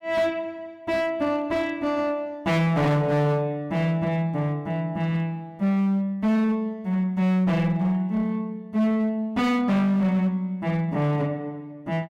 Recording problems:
distortion; hard clipping, uneven, signal-to-distortion ratio 10 dB

